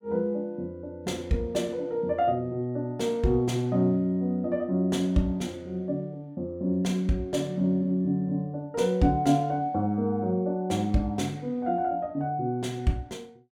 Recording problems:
none

